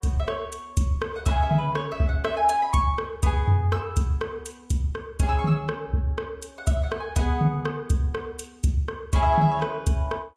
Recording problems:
lossy codec; Vorbis, log-spectral distance 2 dB, nothing above 11.6 kHz

